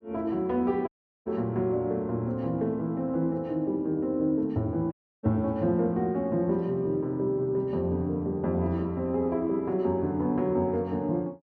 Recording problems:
dropout; at 1 s and at 5 s

